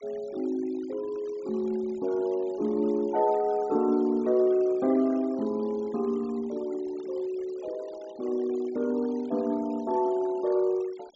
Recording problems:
low-pass filter; nothing above 8 kHz
noise reduction artefacts; signal-to-artefact ratio 24 dB

